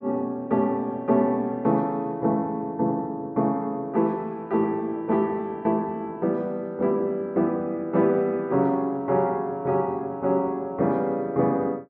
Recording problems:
none

